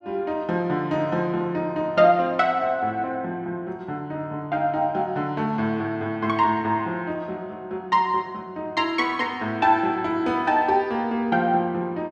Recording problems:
none

